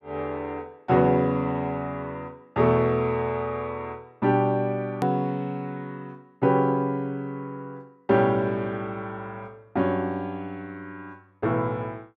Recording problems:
hard cut with a click; at 5 s

